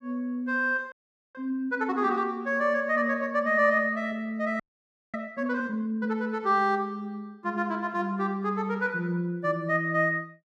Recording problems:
audio freezing; at 1 s and at 4.5 s for 0.5 s

